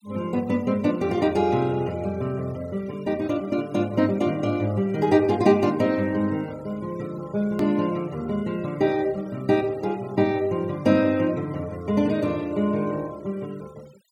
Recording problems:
noise reduction artefacts; signal-to-artefact ratio 25 dB
edit click; at 7.5 s

